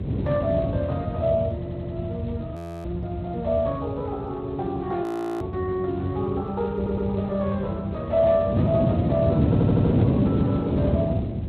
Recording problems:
codec artefacts; MP3, then Speex, log-spectral distance 2 dB, nothing above 13.1 kHz
low-frequency rumble; below 140 Hz, SNR 8 dB
wind on the microphone; below 290 Hz, SNR -3 dB
audio stuttering; at 1.5 s, at 7 s and at 9.5 s
audio freezing; at 2.5 s and at 5 s

